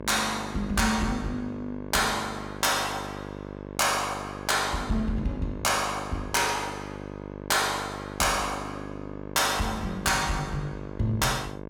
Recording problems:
distortion; soft clipping, signal-to-distortion ratio 10 dB
hum; 50 Hz, harmonics up to 1.7 kHz, SNR 12 dB

